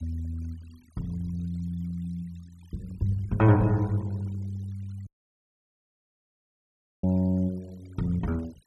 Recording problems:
denoising artefacts; signal-to-artefact ratio 27 dB
dropout; at 5 s for 2 s

